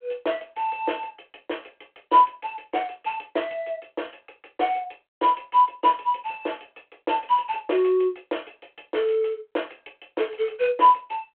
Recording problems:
phone line; 320 Hz to 3.3 kHz, G.726

